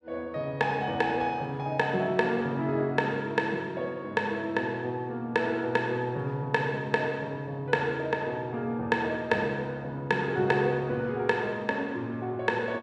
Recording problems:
none

